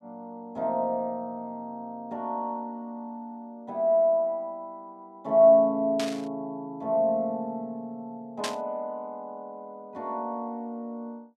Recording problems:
static burst; at 6 s and at 8.5 s; peak 0 dB vs average level

